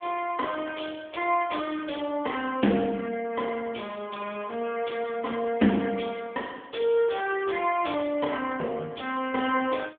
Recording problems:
telephone audio; 220 Hz to 3.4 kHz, AMR-NB

